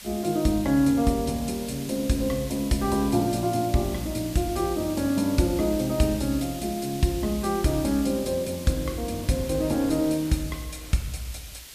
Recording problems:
background hiss; slope +3 dB per octave, SNR 14 dB
wind on the microphone; below 1 kHz, SNR 24 dB

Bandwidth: 14.5 kHz